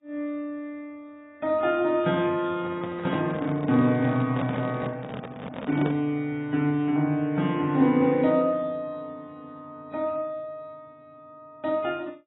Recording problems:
lossy compression; AAC, log-spectral distance 2 dB, nothing above 3.6 kHz
microphone handling noise; from 2.5 to 6 s; peak -2 dB vs average level

